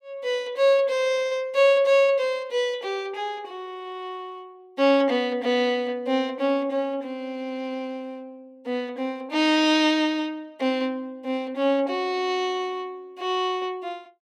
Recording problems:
none

